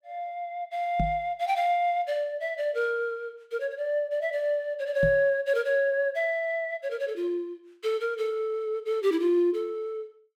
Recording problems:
knock on the microphone; at 1 s and at 5 s; peak +2 dB vs average level

